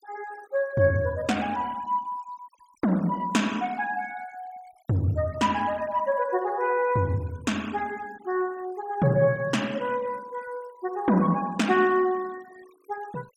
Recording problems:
noise reduction artefacts; signal-to-artefact ratio 22 dB

